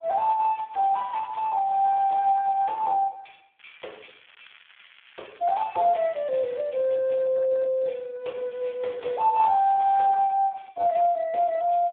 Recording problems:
phone line; 280 Hz to 3.9 kHz, Speex
crackle; from 0.5 to 2.5 s, from 3.5 to 6.5 s and from 8.5 to 10 s; loose cable, SNR 27 dB

